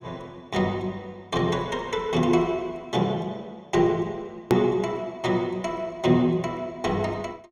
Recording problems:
click at an edit; at 4.5 s

